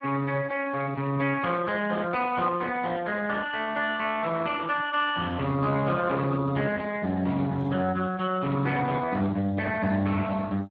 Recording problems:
lossy codec; Speex, log-spectral distance 3 dB

